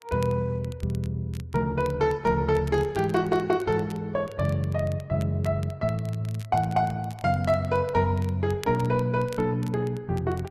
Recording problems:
lossy codec; Opus, log-spectral distance 2 dB, nothing above 11.6 kHz
crackle; vinyl, SNR 24 dB

